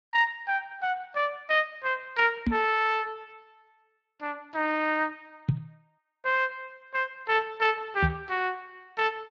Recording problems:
lossy codec; Speex, log-spectral distance 3 dB
microphone bump; at 2.5 s, at 5.5 s and at 8 s; peak +5 dB vs average level

